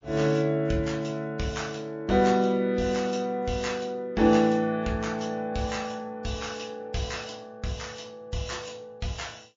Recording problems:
lossy compression; MP3, log-spectral distance 5 dB

